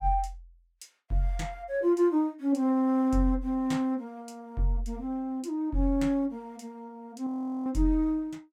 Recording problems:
audio freezing; at 7.5 s

